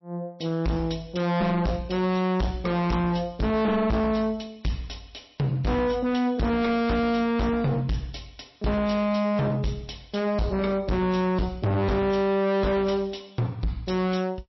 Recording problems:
lossy codec; MP3, log-spectral distance 3 dB, nothing above 5.7 kHz
distortion; hard clipping, uneven, signal-to-distortion ratio 6 dB

